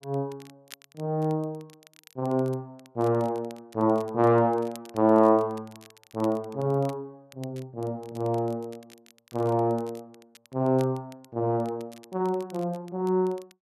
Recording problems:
crackling; vinyl, SNR 27 dB

